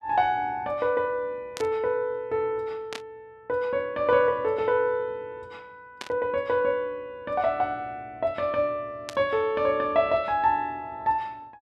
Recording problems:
burst of static; 4 times, first at 1.5 s; peak -5 dB vs average level

